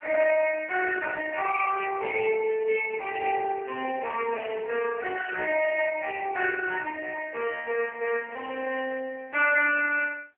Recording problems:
phone line; 320 Hz to 2.7 kHz, AMR-NB

